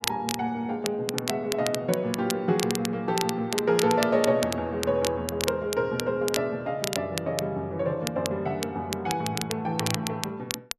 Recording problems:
crackle; vinyl, SNR 7 dB

